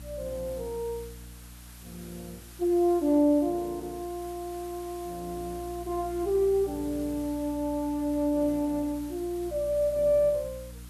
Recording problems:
mains hum; 60 Hz, harmonics up to 300 Hz, SNR 18 dB
background hiss; slope -1 dB per octave, SNR 20 dB

